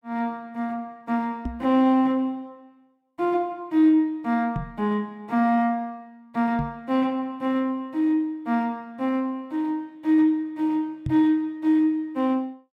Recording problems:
microphone thump; 4 times, first at 1.5 s; peak -1 dB vs average level

